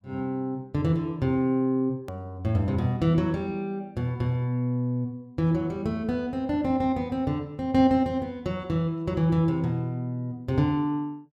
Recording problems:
hard cut with a click; at 2 s

